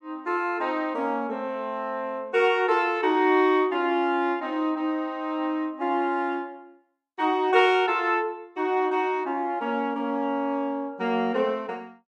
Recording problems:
none

